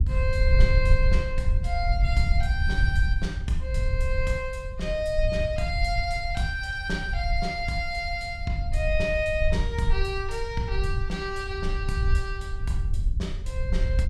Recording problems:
low-frequency rumble; below 72 Hz, SNR -1 dB

